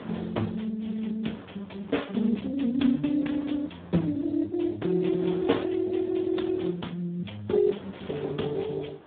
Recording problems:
phone line; 130 Hz to 3.7 kHz, Speex
wind on the microphone; below 1 kHz, SNR 19 dB

